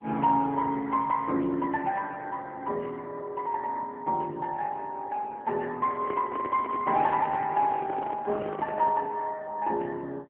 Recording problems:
telephone audio; 240 Hz to 2.8 kHz, AMR-NB
microphone handling noise; from 6 to 9 s; peak -6 dB vs average level

